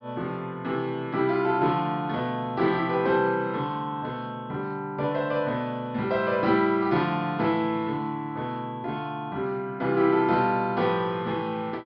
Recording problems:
low-pass filter; nothing above 5.5 kHz

